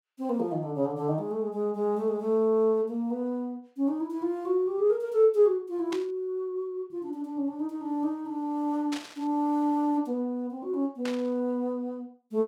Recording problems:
static burst; at 6 s, at 9 s and at 11 s; peak -5 dB vs average level

